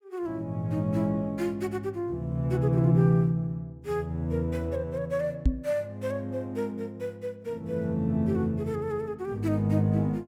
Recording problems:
microphone bump; at 5.5 s; peak +8 dB vs average level

